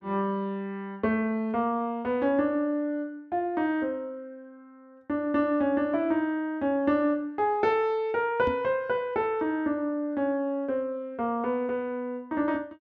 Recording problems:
microphone bump; at 8.5 s; peak -2 dB vs average level

